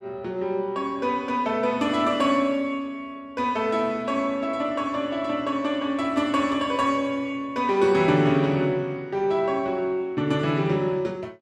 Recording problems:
none

